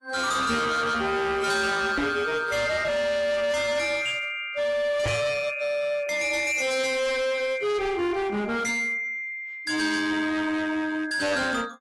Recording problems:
lossy codec; AAC, log-spectral distance 3 dB, nothing above 11.6 kHz
distortion; hard clipping, signal-to-distortion ratio 7 dB
microphone bump; at 2 s and at 5 s; peak +2 dB vs average level

